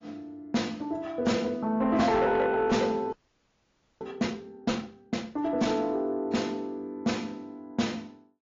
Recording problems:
low-pass filter; nothing above 7.1 kHz
lossy compression; AAC, log-spectral distance 2 dB
distortion; soft clipping, signal-to-distortion ratio 10 dB
frozen audio; at 3 s for 1 s

